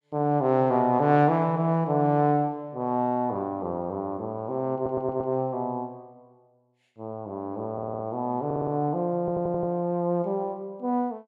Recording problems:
stutter; 4 times, first at 5 s

